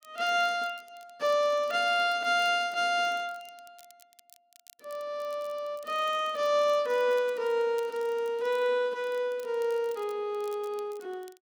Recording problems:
crackle; vinyl, SNR 28 dB

